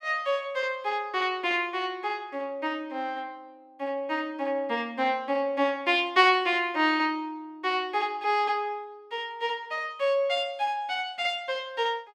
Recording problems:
none

